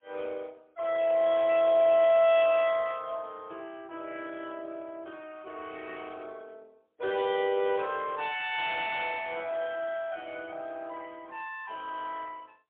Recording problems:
telephone audio; 260 Hz to 3.5 kHz, AMR-NB, then MP3

